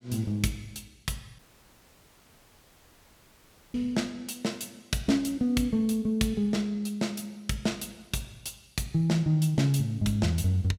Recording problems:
audio cutting out; at 1.5 s for 2.5 s

